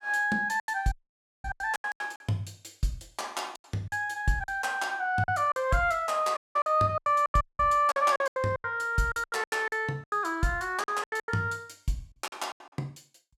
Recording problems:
lost packets; 15% of the sound replaced, filled with silence
audio cutting out; at 1 s for 0.5 s, at 6.5 s and at 7.5 s

